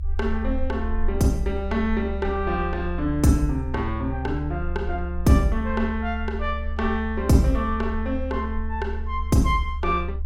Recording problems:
rumble; below 70 Hz, strongest tone 70 Hz, SNR 6 dB

